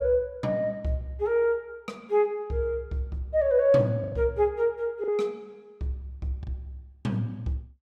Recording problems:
lost packets; 2% of the sound replaced, filled with the last packet

